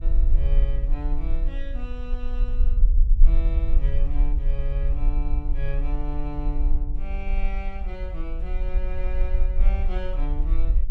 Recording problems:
low-frequency rumble; below 42 Hz, strongest tone 20 Hz, SNR -11 dB

